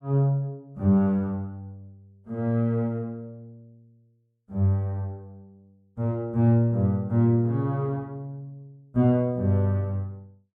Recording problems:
none

